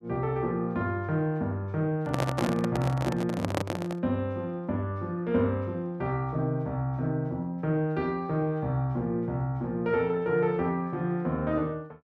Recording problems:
handling noise; from 2 to 4 s; peak +4 dB vs average level

